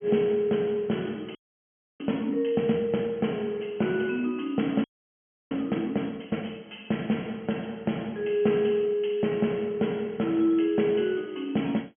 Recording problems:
treble missing; nothing above 3.3 kHz
audio freezing; at 1.5 s for 0.5 s and at 5 s for 0.5 s

